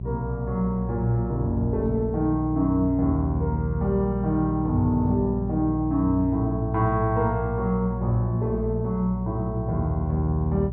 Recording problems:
electrical hum; 60 Hz, harmonics up to 420 Hz, SNR 6 dB

